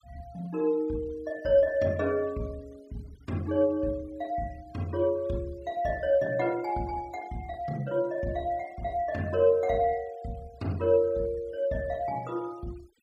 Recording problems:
noise reduction artefacts; signal-to-artefact ratio 27 dB

